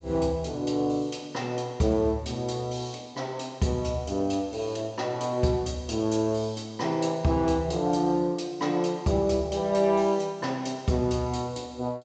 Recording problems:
treble cut off; nothing above 8 kHz

